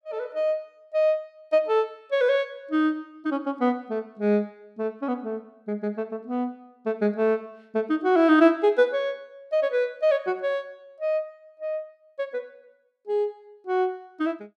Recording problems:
none

